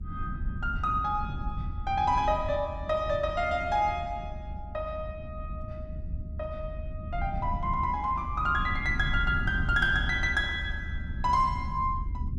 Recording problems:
rumble; below 110 Hz, SNR 7 dB

